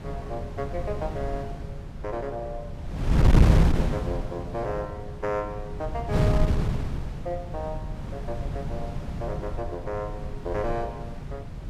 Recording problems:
wind noise; below 160 Hz, SNR -5 dB

